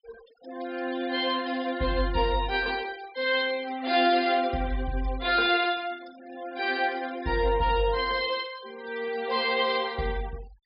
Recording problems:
treble missing; nothing above 5.2 kHz
noise reduction artefacts; signal-to-artefact ratio 21 dB

